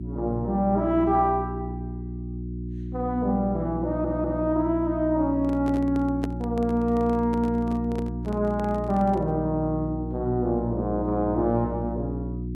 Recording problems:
hum; 60 Hz, harmonics up to 360 Hz, SNR 7 dB
audio stuttering; at 4 s
microphone handling noise; from 5.5 to 9.5 s; peak -4 dB vs average level

